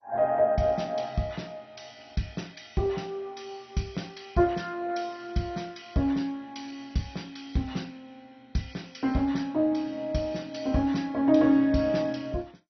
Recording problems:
lossy compression; MP2, log-spectral distance 4 dB, nothing above 6 kHz

